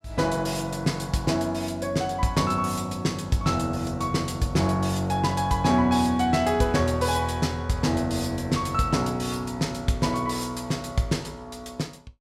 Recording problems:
none

